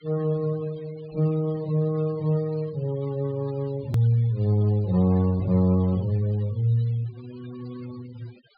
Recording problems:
treble missing; nothing above 4.8 kHz
noise reduction artefacts; signal-to-artefact ratio 25 dB
hard cut with a click; at 4 s

